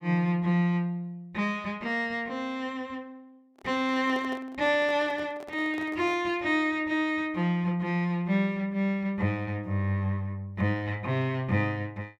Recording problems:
microphone handling noise; from 3.5 to 6.5 s; peak -9 dB vs average level

